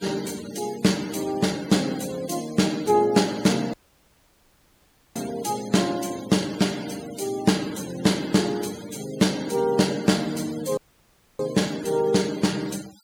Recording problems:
denoising artefacts; signal-to-artefact ratio 17 dB
audio cutting out; at 3.5 s for 1.5 s and at 11 s for 0.5 s

